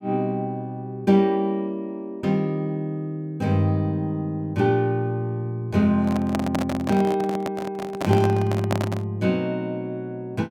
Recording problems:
microphone handling noise; from 6 to 9 s; peak +2 dB vs average level

